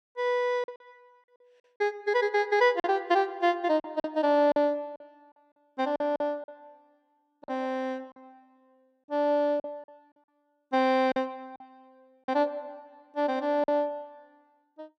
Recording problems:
lost packets; 8% of the sound replaced, filled with silence

